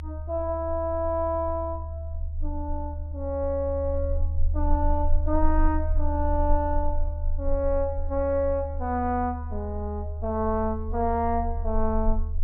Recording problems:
rumble; below 76 Hz, strongest tone 20 Hz, SNR 3 dB

